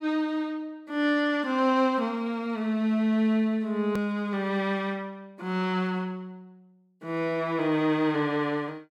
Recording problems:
click at an edit; at 4 s

